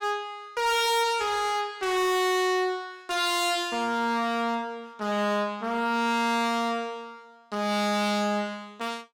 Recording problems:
distortion; hard clipping, uneven, signal-to-distortion ratio 6 dB

